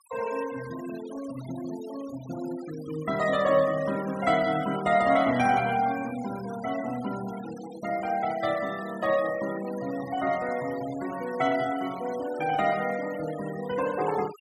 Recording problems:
noise reduction artefacts; signal-to-artefact ratio 16 dB

